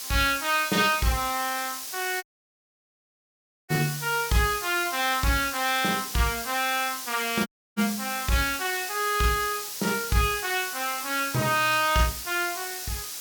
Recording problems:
background hiss; SNR 7 dB
dropout; at 2 s for 1.5 s and at 7.5 s

